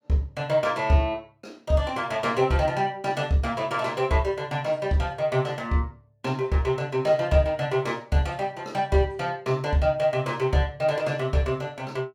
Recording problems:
none

